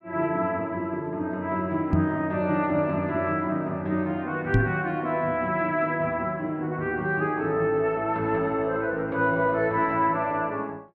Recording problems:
microphone bump; at 2 s and at 4.5 s; peak +8 dB vs average level

